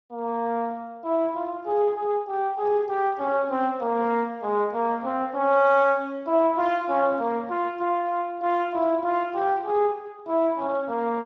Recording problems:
codec artefacts; Speex, log-spectral distance 2 dB

